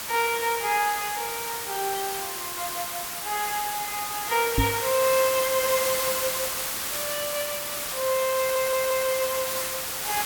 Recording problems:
background hiss; slope 0 dB per octave, SNR 1 dB
knock on the microphone; at 4.5 s; peak +7 dB vs average level
stutter; at 8.5 s

